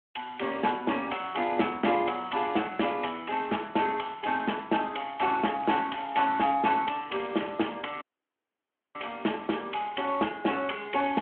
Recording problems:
telephone audio; 220 Hz to 3.3 kHz, Speex
crackle; at 5.5 s; loose cable, SNR 24 dB
audio cutting out; at 8 s for 1 s

